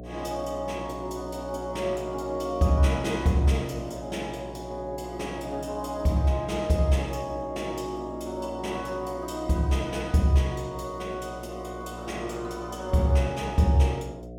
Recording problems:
hum; 60 Hz, harmonics up to 720 Hz, SNR 13 dB

